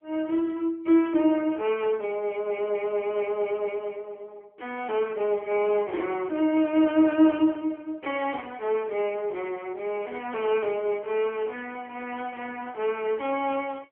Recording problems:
telephone audio; 260 Hz to 3.2 kHz, AMR-NB

